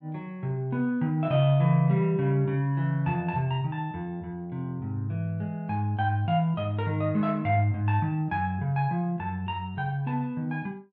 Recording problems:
none

